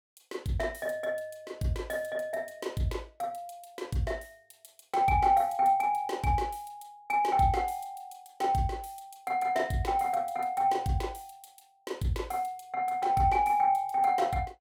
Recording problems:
none

